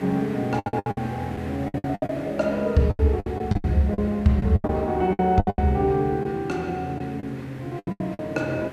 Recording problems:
background hiss; SNR 17 dB
lost packets; 16% of the sound replaced, filled with the last packet

